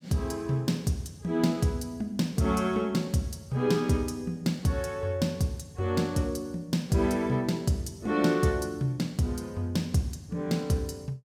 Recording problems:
none

